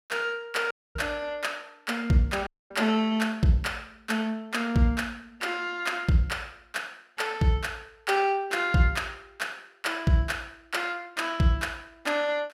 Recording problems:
audio cutting out; at 0.5 s and at 2.5 s

